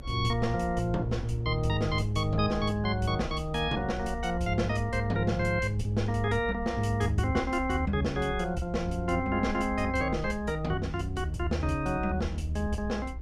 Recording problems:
rumble; below 66 Hz, strongest tone 62 Hz, SNR 10 dB

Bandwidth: 14.5 kHz